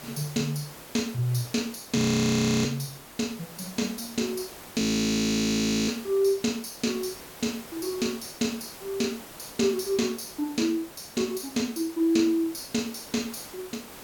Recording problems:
background hiss; slope -4 dB per octave, SNR 15 dB
audio freezing; at 2 s for 0.5 s and at 5 s for 1 s

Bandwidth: 17.5 kHz